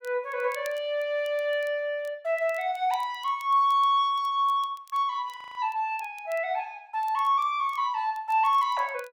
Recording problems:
crackle; vinyl, SNR 28 dB
frozen audio; at 5.5 s

